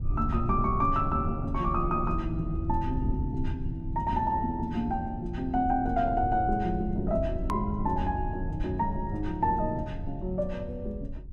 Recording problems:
rumble; below 88 Hz, SNR 7 dB
click at an edit; at 7.5 s

